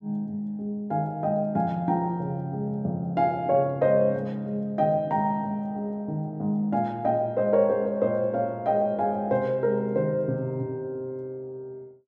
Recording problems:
none

